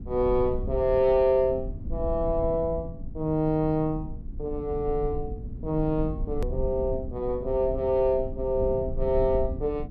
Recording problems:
low-frequency rumble; below 94 Hz, SNR 9 dB
hard cut with a click; at 6.5 s

